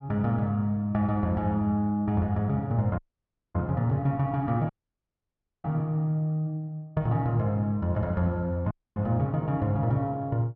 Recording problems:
dropout; at 3 s for 0.5 s, at 4.5 s for 1 s and at 8.5 s

